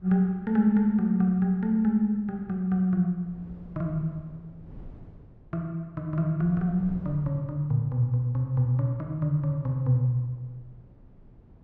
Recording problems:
wind noise; below 200 Hz, SNR 24 dB

